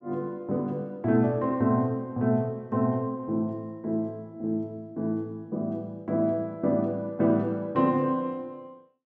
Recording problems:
none

